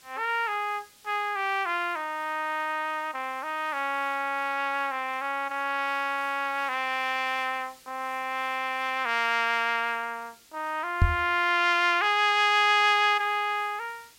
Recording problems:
hiss; SNR 26 dB
microphone bump; at 11 s; peak +7 dB vs average level

